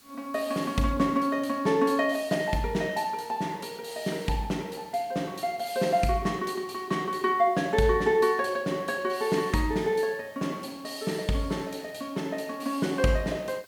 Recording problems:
background hiss; slope 0 dB per octave, SNR 27 dB

